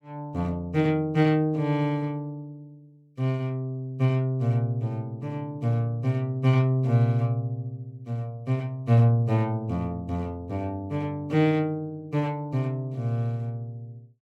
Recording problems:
none

